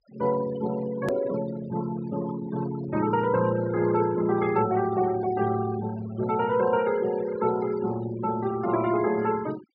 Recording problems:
low-pass filter; nothing above 5.5 kHz
denoising artefacts; signal-to-artefact ratio 15 dB
hard cut with a click; at 1 s

